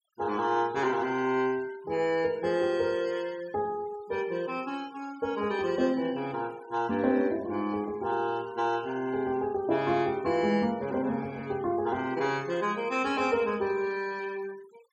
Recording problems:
noise reduction artefacts; signal-to-artefact ratio 22 dB

